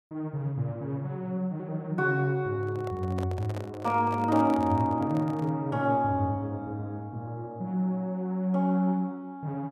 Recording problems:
handling noise; from 2.5 to 5.5 s; peak -6 dB vs average level

